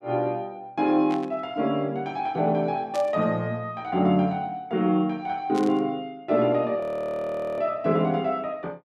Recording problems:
burst of static; at 1 s, at 3 s and at 5.5 s; peak -9 dB vs average level
audio freezing; at 7 s for 1 s

